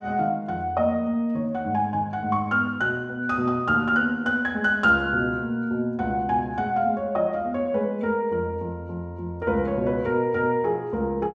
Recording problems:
none

